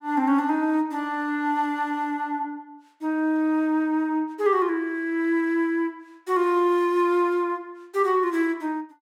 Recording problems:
none

